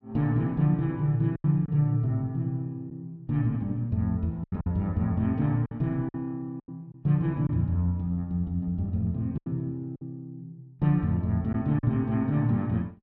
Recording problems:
packet loss; 5% of the sound replaced, filled with silence

